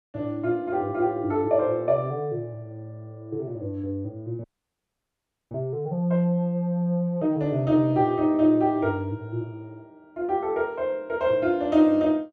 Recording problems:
frozen audio; at 4.5 s for 1 s

